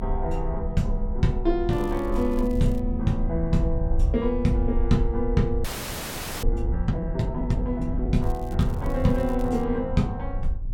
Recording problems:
rumble; below 54 Hz, strongest tone 30 Hz, SNR 5 dB
wind on the microphone; below 120 Hz, SNR 14 dB
crackling; from 1.5 to 3 s and from 8 to 9.5 s; loose cable, SNR 25 dB
audio freezing; at 5.5 s for 1 s

